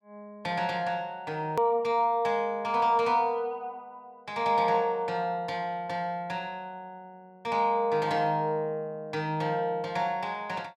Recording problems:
click at an edit; at 1.5 s

